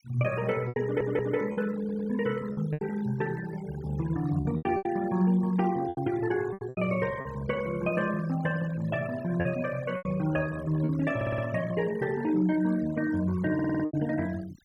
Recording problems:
denoising artefacts; signal-to-artefact ratio 16 dB
packet loss; 7% of the sound replaced, filled with repeated pitch periods
audio stuttering; 4 times, first at 1 s

